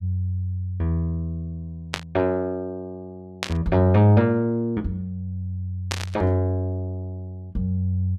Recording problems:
static burst; at 2 s, at 3.5 s and at 6 s; peak +2 dB vs average level

